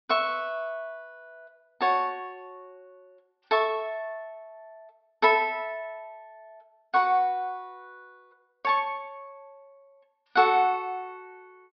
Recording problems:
low-pass filter; nothing above 5.5 kHz

